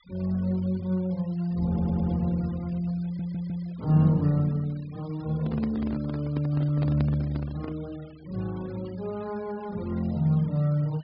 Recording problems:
low-pass filter; nothing above 5.2 kHz
noise reduction artefacts; signal-to-artefact ratio 25 dB
stutter; at 1.5 s and at 3 s
handling noise; from 5.5 to 8 s; peak -2 dB vs average level

